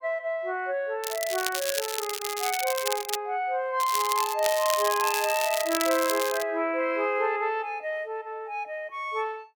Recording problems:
crackling; from 1 to 3 s and from 4 to 6.5 s; loose cable, SNR 4 dB

